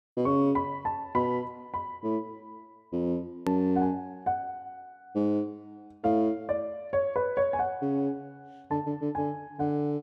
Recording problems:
click at an edit; at 3.5 s

